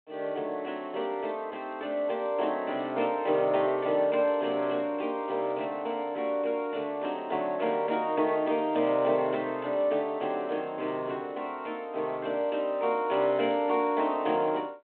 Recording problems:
phone line; 300 Hz to 3.4 kHz, G.726

